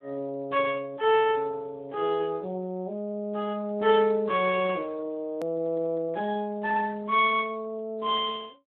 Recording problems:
telephone audio; 240 Hz to 3.5 kHz, Speex
click at an edit; at 5.5 s

